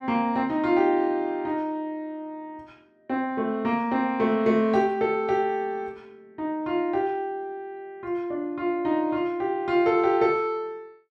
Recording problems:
none

